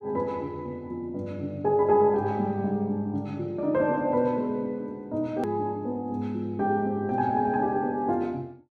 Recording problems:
hard cut with a click; at 5.5 s

